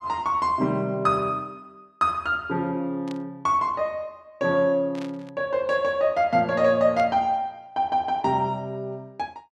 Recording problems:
burst of static; at 3 s, at 5 s and at 7 s; peak -12 dB vs average level

